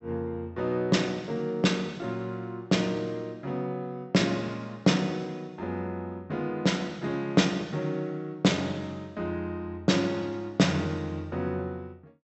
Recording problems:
treble missing; nothing above 7.7 kHz

